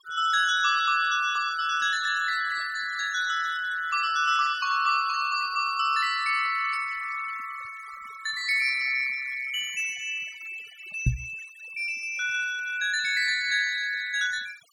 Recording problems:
denoising artefacts; signal-to-artefact ratio 16 dB
knock on the microphone; at 11 s; peak +6 dB vs average level

